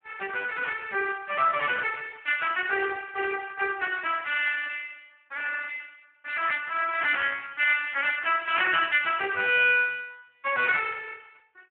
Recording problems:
telephone audio; 320 Hz to 3.2 kHz, Speex

